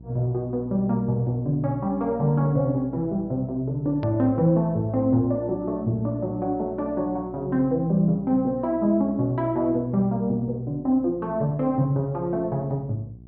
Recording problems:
treble missing; nothing above 5.5 kHz
mains hum; 60 Hz, harmonics up to 420 Hz, SNR 20 dB
hard cut with a click; at 4 s

